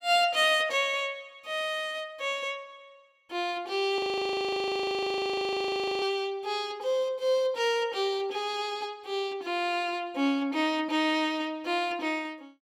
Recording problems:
audio freezing; at 4 s for 2 s

